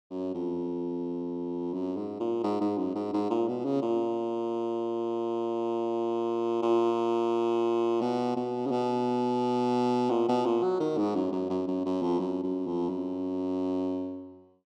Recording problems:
none

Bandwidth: 12.5 kHz